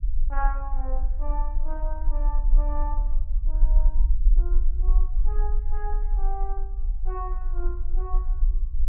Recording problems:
treble cut off; nothing above 3.7 kHz
rumble; below 40 Hz, strongest tone 20 Hz, SNR -11 dB

